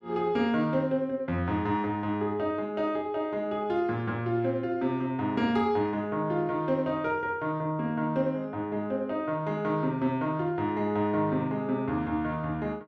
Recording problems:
none

